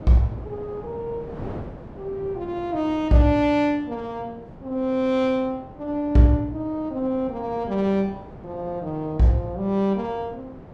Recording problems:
wind on the microphone; below 540 Hz, SNR 17 dB

